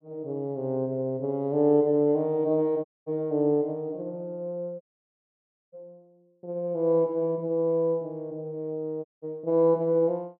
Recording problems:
audio cutting out; at 3 s, at 5 s for 1 s and at 9 s

